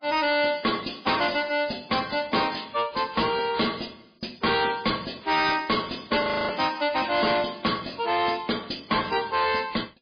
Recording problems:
codec artefacts; MP3, log-spectral distance 12 dB, nothing above 5 kHz
distortion; soft clipping, signal-to-distortion ratio 7 dB
frozen audio; at 6 s

